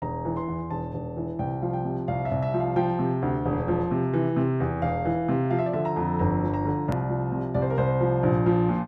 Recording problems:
click at an edit; at 7 s

